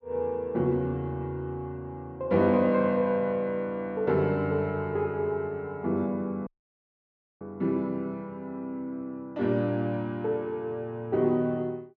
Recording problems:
low-pass filter; nothing above 7.6 kHz
dropout; at 6.5 s for 1 s

